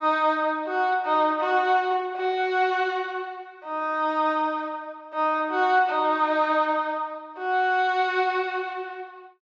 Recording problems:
treble missing; nothing above 8 kHz

